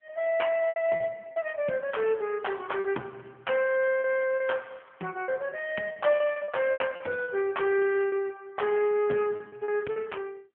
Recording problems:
telephone audio; 260 Hz to 3.2 kHz, AMR-NB
packet loss; 8% of the sound replaced, filled with repeated pitch periods

